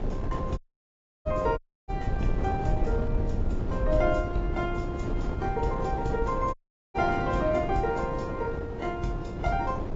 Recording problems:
treble missing; nothing above 7.6 kHz
codec artefacts; AAC, log-spectral distance 2 dB
rumble; below 86 Hz, SNR 5 dB
wind on the microphone; below 470 Hz, SNR 6 dB
audio cutting out; at 0.5 s for 0.5 s, at 1.5 s and at 6.5 s

